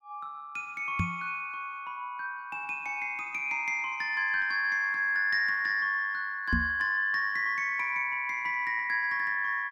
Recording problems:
microphone thump; at 1 s and at 6.5 s; peak +3 dB vs average level

